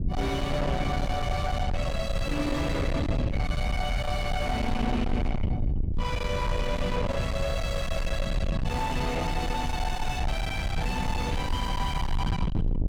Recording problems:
distortion; soft clipping, signal-to-distortion ratio 6 dB
rumble; below 180 Hz, SNR 0 dB

